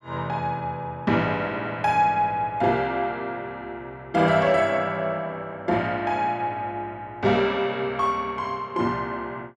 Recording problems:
none

